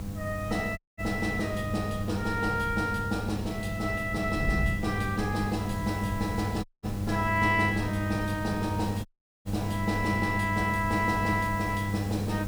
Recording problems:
hum; 50 Hz, harmonics up to 1 kHz, SNR 4 dB
background hiss; SNR 18 dB
wind on the microphone; below 150 Hz, SNR 8 dB
audio cutting out; at 1 s, at 6.5 s and at 9 s

